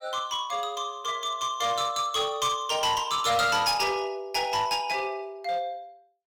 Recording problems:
distortion; hard clipping, uneven, signal-to-distortion ratio 11 dB

